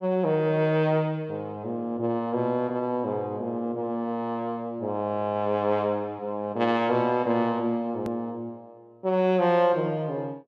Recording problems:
hard cut with a click; at 8 s

